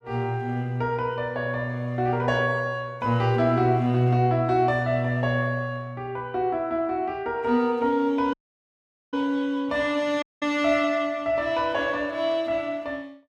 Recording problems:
audio cutting out; at 8.5 s for 1 s and at 10 s

